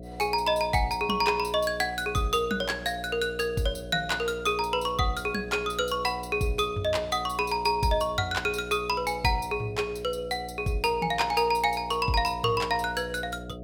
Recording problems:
electrical hum; 60 Hz, harmonics up to 720 Hz, SNR 15 dB

